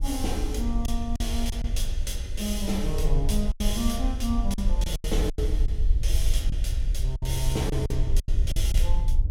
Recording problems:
rumble; below 58 Hz, SNR -3 dB
wind on the microphone; below 260 Hz, SNR 18 dB
lost packets; 8% of the sound replaced, filled with silence

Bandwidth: 16.5 kHz